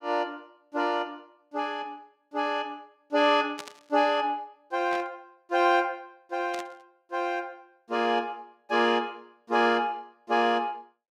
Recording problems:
burst of static; at 3.5 s, at 5 s and at 6.5 s; peak -6 dB vs average level

